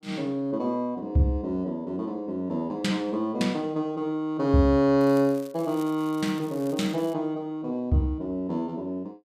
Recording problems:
crackling; from 5 to 7 s; loose cable, SNR 23 dB

